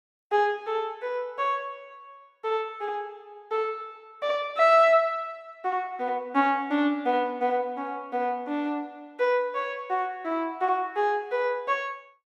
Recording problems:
none

